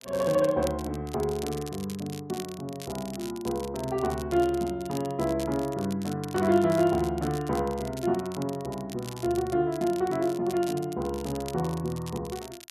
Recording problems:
crackling; vinyl, SNR 16 dB

